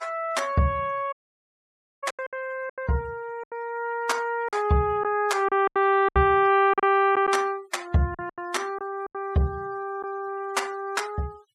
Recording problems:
denoising artefacts; signal-to-artefact ratio 24 dB
packet loss; 8% of the sound replaced, filled with silence
dropout; at 1 s for 1 s

